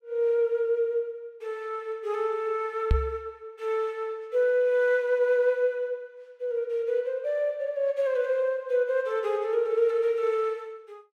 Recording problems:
microphone thump; at 3 s; peak +6 dB vs average level

